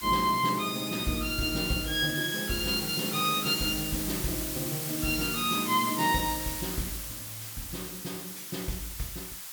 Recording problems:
hiss; slope +2 dB per octave, SNR 5 dB

